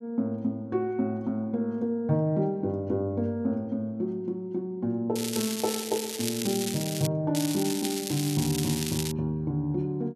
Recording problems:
crackling; from 5 to 7 s and from 7.5 to 9 s; loose cable, SNR 4 dB

